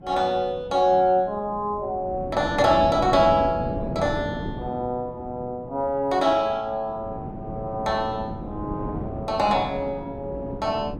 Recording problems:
wind on the microphone; below 350 Hz, SNR 10 dB

